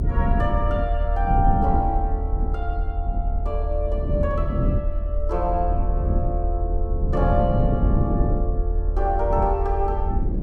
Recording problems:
rumble; below 74 Hz, strongest tone 38 Hz, SNR 0 dB
wind on the microphone; below 210 Hz, SNR 0 dB

